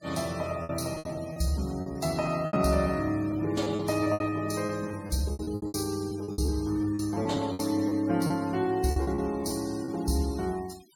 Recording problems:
denoising artefacts; signal-to-artefact ratio 19 dB
lost packets; 13% of the sound replaced, filled with repeated pitch periods

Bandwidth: 17 kHz